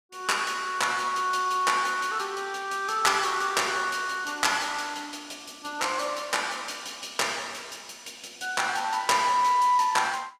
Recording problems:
none

